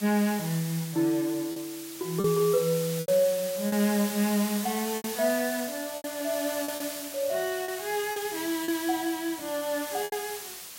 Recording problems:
background hiss; slope +1 dB per octave, SNR 8 dB
lost packets; 6% of the sound replaced, filled with repeated pitch periods

